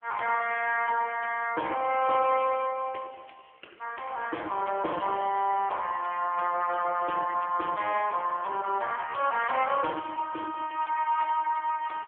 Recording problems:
telephone audio; 340 Hz to 2.7 kHz, AMR-NB

